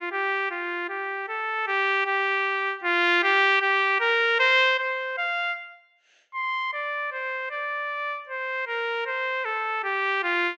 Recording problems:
low-pass filter; nothing above 8 kHz

